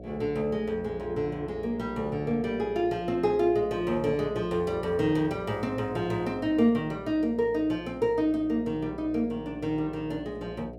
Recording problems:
hum; 60 Hz, harmonics up to 720 Hz, SNR 15 dB

